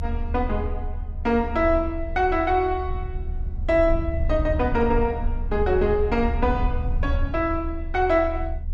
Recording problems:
low-frequency rumble; below 74 Hz, strongest tone 28 Hz, SNR 6 dB

